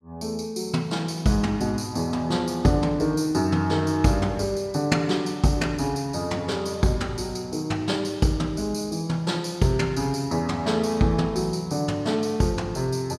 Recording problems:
none

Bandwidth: 15.5 kHz